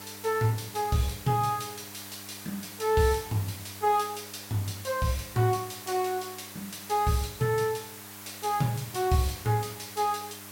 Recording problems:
mains hum; 50 Hz, harmonics up to 1.5 kHz, SNR 22 dB
background hiss; SNR 13 dB

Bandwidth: 16.5 kHz